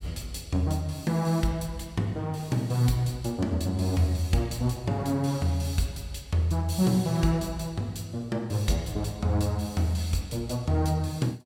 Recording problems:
none

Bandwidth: 16.5 kHz